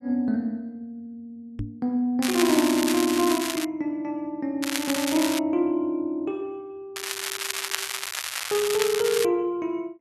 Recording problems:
microphone bump; at 1.5 s; peak -2 dB vs average level
crackling; from 2 to 3.5 s, at 4.5 s and from 7 to 9.5 s; loose cable, SNR 4 dB

